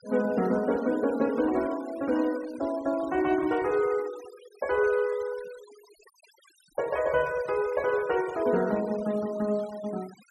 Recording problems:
noise reduction artefacts; signal-to-artefact ratio 20 dB

